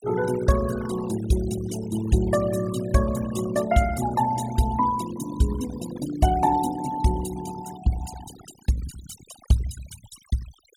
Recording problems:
denoising artefacts; signal-to-artefact ratio 13 dB

